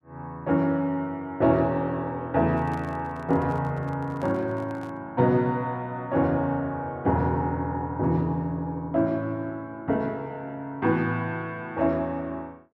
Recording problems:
handling noise; from 2.5 to 5 s; peak -11 dB vs average level

